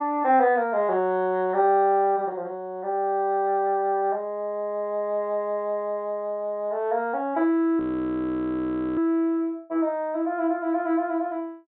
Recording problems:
low-pass filter; nothing above 4 kHz
frozen audio; at 8 s for 1 s

